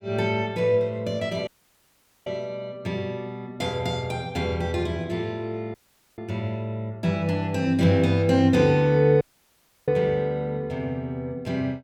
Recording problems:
dropout; at 1.5 s for 1 s, at 5.5 s and at 9 s for 0.5 s

